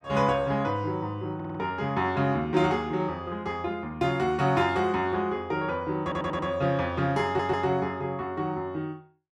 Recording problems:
audio stuttering; at 1.5 s, at 6 s and at 7.5 s

